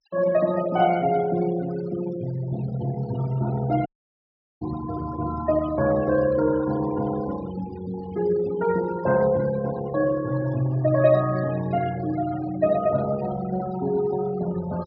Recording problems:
low-pass filter; nothing above 5.5 kHz
noise reduction artefacts; signal-to-artefact ratio 15 dB
audio cutting out; at 4 s for 1 s

